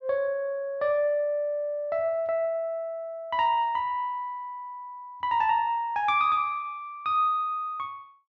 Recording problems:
none

